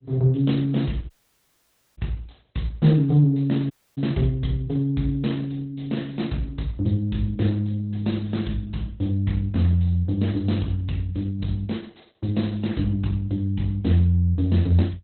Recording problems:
codec artefacts; Opus, log-spectral distance 4 dB, nothing above 4.1 kHz
dropout; at 1 s for 1 s and at 3.5 s

